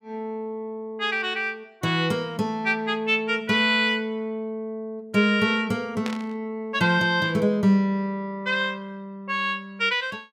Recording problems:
burst of static; at 6 s; peak -5 dB vs average level

